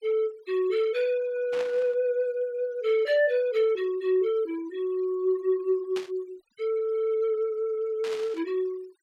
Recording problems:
denoising artefacts; signal-to-artefact ratio 24 dB
static burst; at 1.5 s, at 6 s and at 8 s; peak -7 dB vs average level

